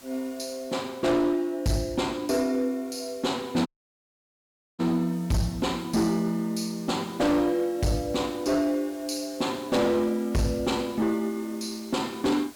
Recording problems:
distorted audio; hard clipping, signal-to-distortion ratio 11 dB
hiss; slope -2 dB per octave, SNR 22 dB
audio cutting out; at 3.5 s for 1 s

